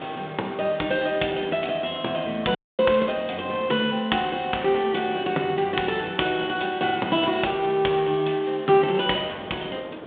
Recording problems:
phone line; 240 Hz to 3.7 kHz, G.726
background hiss; SNR 22 dB
wind noise; below 650 Hz, SNR 20 dB
dropout; at 2.5 s

